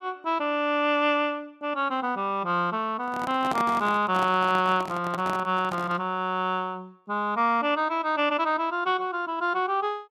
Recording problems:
handling noise; from 3 to 6 s; peak -2 dB vs average level

